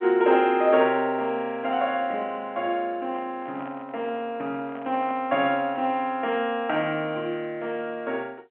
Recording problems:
phone line; 190 Hz to 3.3 kHz, G.711
microphone handling noise; from 3 to 6 s; peak -11 dB vs average level

